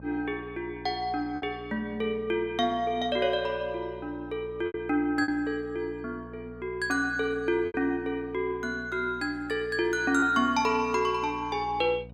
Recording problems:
electrical hum; 60 Hz, harmonics up to 960 Hz, SNR 19 dB
packet loss; 2% of the sound replaced, filled with repeated pitch periods

